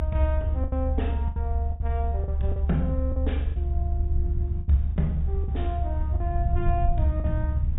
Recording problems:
treble missing; nothing above 4 kHz
hum; 50 Hz, harmonics up to 600 Hz, SNR 19 dB
rumble; below 74 Hz, strongest tone 70 Hz, SNR -4 dB
wind noise; below 990 Hz, SNR 26 dB
packet loss; 8% of the sound replaced, filled with the last packet

